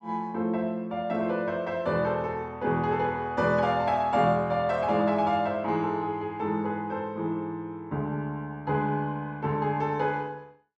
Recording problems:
none

